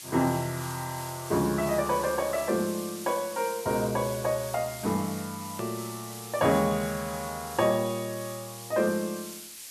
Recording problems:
hiss; SNR 11 dB
hard cut with a click; at 5.5 s

